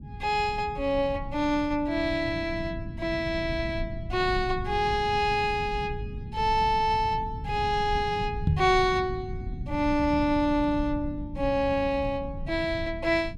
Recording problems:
rumble; below 140 Hz, SNR 10 dB
knock on the microphone; at 8.5 s; peak +6 dB vs average level

